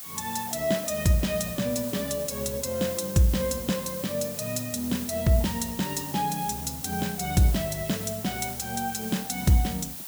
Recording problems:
background hiss; slope +1 dB per octave, SNR 8 dB

